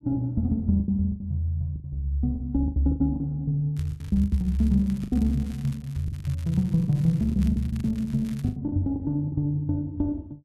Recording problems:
lost packets; 12% of the sound replaced, filled with the last packet
crackling; from 3.5 to 8.5 s; loose cable, SNR 25 dB

